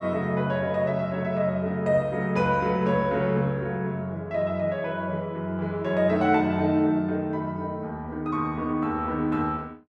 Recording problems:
none

